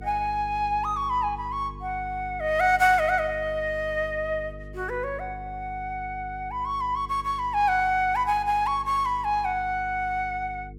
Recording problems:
electrical hum; 50 Hz, harmonics up to 450 Hz, SNR 16 dB

